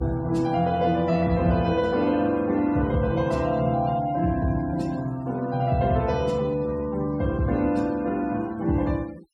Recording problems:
denoising artefacts; signal-to-artefact ratio 24 dB

